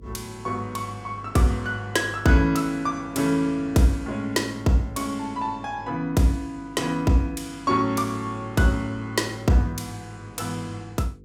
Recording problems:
hum; 50 Hz, harmonics up to 500 Hz, SNR 23 dB

